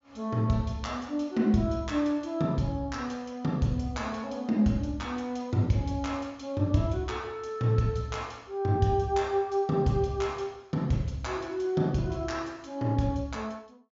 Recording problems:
treble cut off; nothing above 7.3 kHz

